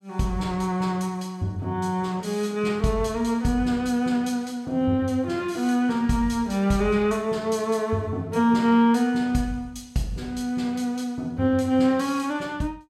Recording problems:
none

